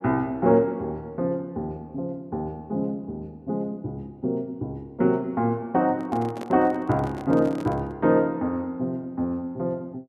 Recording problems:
microphone handling noise; from 6 to 8 s; peak -6 dB vs average level

